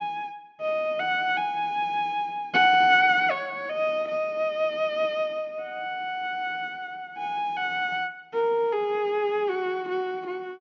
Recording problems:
treble missing; nothing above 6.7 kHz

